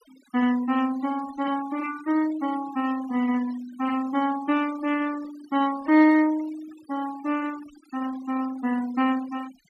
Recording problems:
denoising artefacts; signal-to-artefact ratio 18 dB

